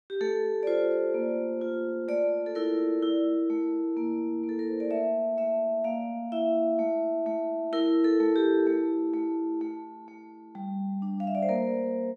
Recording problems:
none

